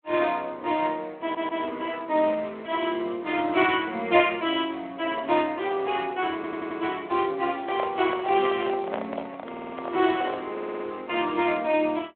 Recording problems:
telephone audio; 260 Hz to 3.5 kHz, Speex
audio stuttering; 4 times, first at 1 s
handling noise; from 7.5 to 10 s; peak -1 dB vs average level

